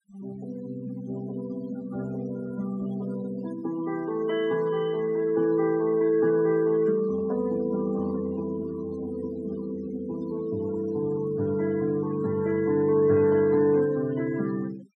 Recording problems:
noise reduction artefacts; signal-to-artefact ratio 19 dB

